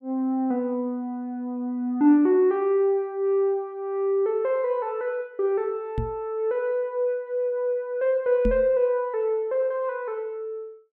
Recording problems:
microphone bump; at 6 s and at 8.5 s; peak +2 dB vs average level

